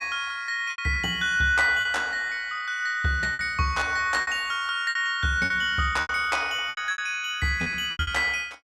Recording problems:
packet loss; 10% of the sound replaced, filled with repeated pitch periods

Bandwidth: 16 kHz